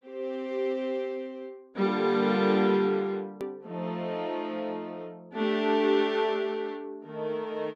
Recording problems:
hard cut with a click; at 3.5 s

